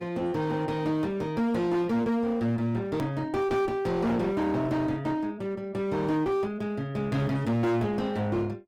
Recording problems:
lossy codec; Opus, log-spectral distance 2 dB, nothing above 20.1 kHz
distortion; hard clipping, uneven, signal-to-distortion ratio 6 dB
hard cut with a click; at 3 s

